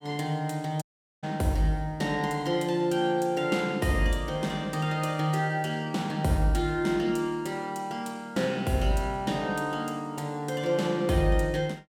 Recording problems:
dropout; at 1 s

